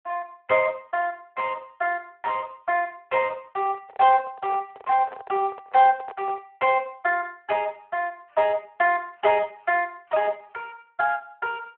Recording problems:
phone line; 240 Hz to 3.1 kHz, Speex
handling noise; from 3.5 to 6.5 s; peak -9 dB vs average level

